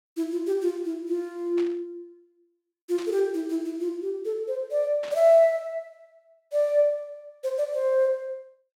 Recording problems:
burst of static; at 1.5 s, at 3 s and at 5 s; peak -12 dB vs average level

